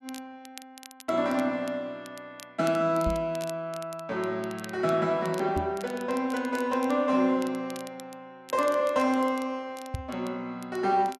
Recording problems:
crackle; vinyl, SNR 20 dB
microphone thump; at 3 s, at 5.5 s and at 10 s; peak 0 dB vs average level

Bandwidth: 12.5 kHz